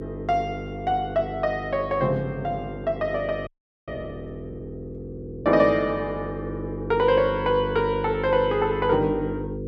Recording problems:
hum; 50 Hz, harmonics up to 500 Hz, SNR 9 dB
frozen audio; at 3.5 s

